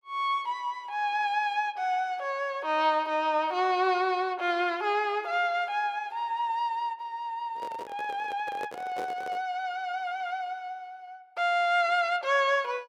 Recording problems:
microphone handling noise; from 7.5 to 9.5 s; peak -5 dB vs average level

